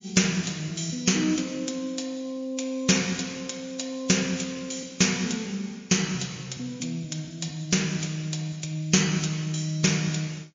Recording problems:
codec artefacts; MP3, log-spectral distance 7 dB

